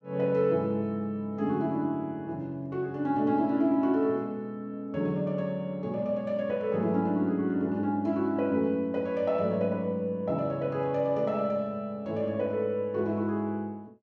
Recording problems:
none

